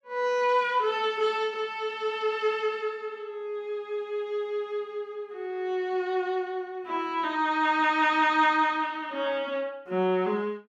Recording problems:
none

